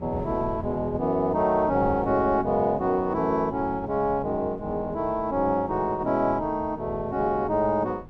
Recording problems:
wind on the microphone; below 300 Hz, SNR 16 dB

